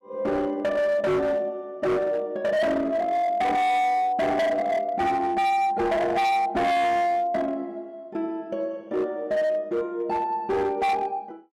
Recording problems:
distortion; hard clipping, signal-to-distortion ratio 8 dB

